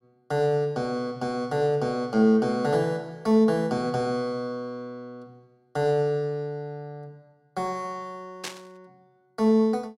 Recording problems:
static burst; at 8.5 s; peak -4 dB vs average level

